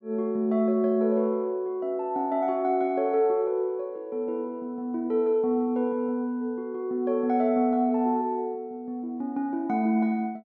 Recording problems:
none

